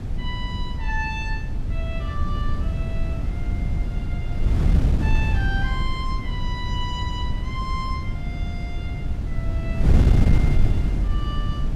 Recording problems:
wind noise; below 110 Hz, SNR -9 dB

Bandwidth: 14.5 kHz